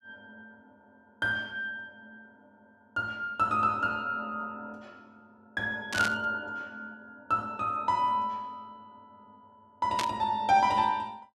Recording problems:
burst of static; at 6 s and at 10 s; peak +2 dB vs average level

